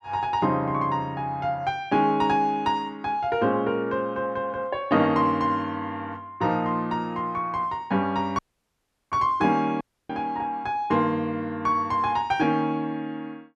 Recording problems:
dropout; at 8.5 s for 0.5 s and at 10 s

